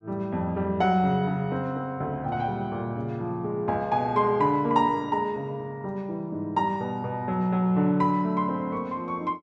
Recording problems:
none

